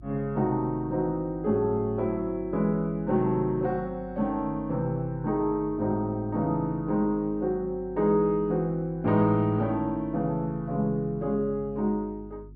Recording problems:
hum; 50 Hz, harmonics up to 350 Hz, SNR 19 dB

